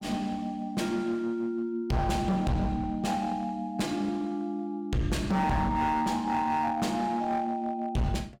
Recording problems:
distortion; hard clipping, uneven, signal-to-distortion ratio 8 dB

